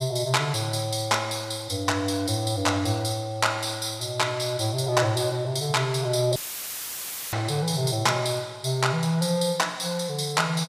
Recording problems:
audio cutting out; at 6.5 s for 1 s; filled with static

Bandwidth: 15 kHz